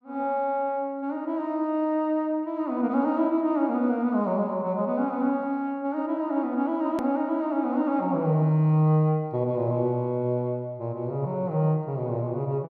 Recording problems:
edit click; at 7 s

